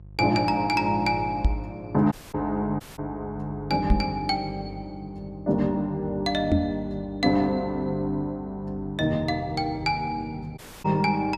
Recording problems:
electrical hum; 50 Hz, harmonics up to 500 Hz, SNR 17 dB
microphone thump; at 1.5 s, at 4 s and at 6.5 s; peak +9 dB vs average level
audio cutting out; at 2 s, at 3 s and at 11 s

